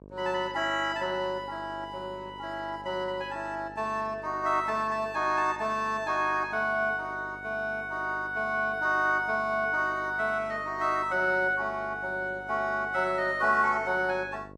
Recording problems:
hum; 50 Hz, harmonics up to 1.1 kHz, SNR 21 dB

